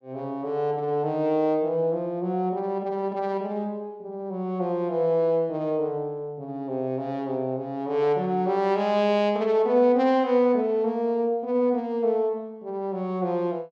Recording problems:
none

